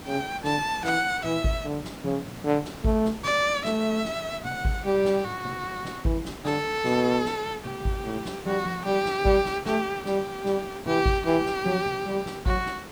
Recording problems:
hiss; slope -5 dB per octave, SNR 15 dB

